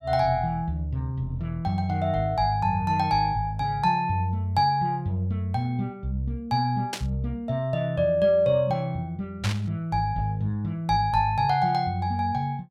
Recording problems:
burst of static; at 7 s and at 9.5 s; peak -1 dB vs average level

